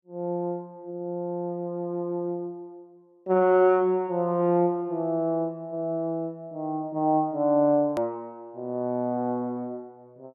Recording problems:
click at an edit; at 8 s

